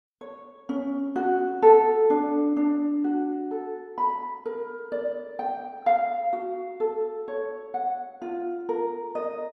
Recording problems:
none

